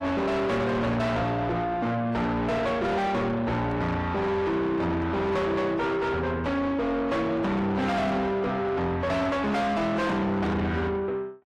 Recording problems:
lossy codec; AAC, log-spectral distance 2 dB, nothing above 13.1 kHz
distorted audio; soft clipping, signal-to-distortion ratio 6 dB

